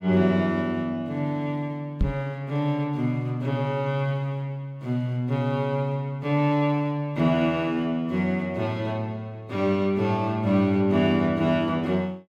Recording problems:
microphone thump; at 2 s; peak +4 dB vs average level

